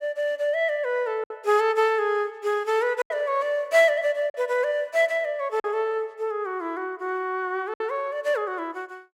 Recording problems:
packet loss; 3% of the sound replaced, filled with silence

